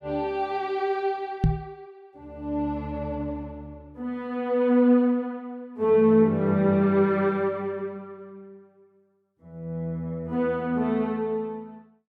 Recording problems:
knock on the microphone; at 1.5 s; peak +6 dB vs average level

